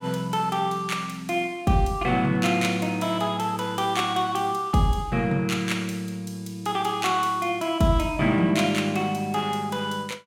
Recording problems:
none

